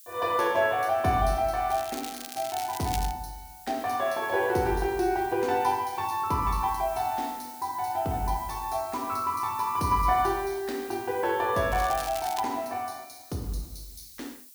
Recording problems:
hiss; slope +6 dB per octave, SNR 18 dB
crackle; from 1.5 to 3 s and at 12 s; loose cable, SNR 11 dB

